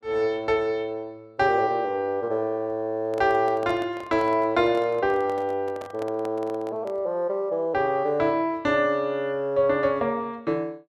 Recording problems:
handling noise; from 3 to 7 s; peak -7 dB vs average level

